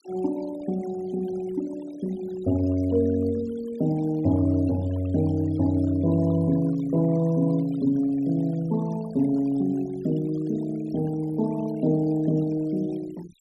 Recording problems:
denoising artefacts; signal-to-artefact ratio 21 dB

